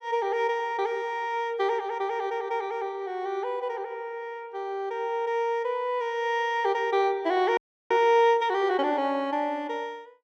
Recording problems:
frozen audio; at 7.5 s

